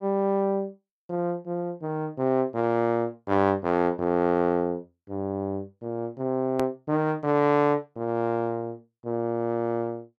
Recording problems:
hard cut with a click; at 6.5 s

